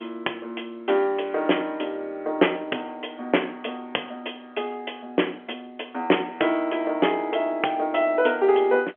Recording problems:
telephone audio; 280 Hz to 3.3 kHz, G.711

